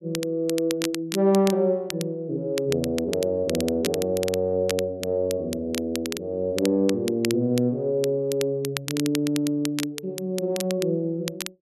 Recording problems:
crackling; vinyl, SNR 10 dB

